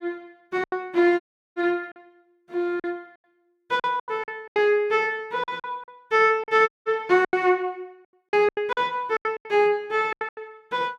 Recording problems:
packet loss; 13% of the sound replaced, filled with silence
audio cutting out; at 1 s and at 6.5 s

